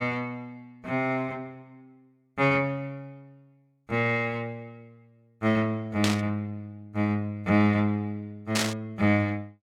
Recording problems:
burst of static; at 6 s and at 8.5 s; peak +4 dB vs average level

